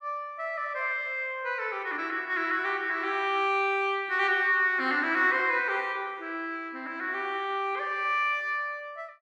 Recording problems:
none

